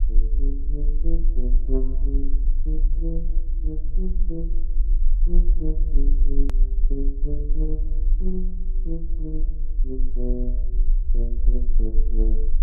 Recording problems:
low-frequency rumble; below 36 Hz, strongest tone 24 Hz, SNR -10 dB
click at an edit; at 6.5 s

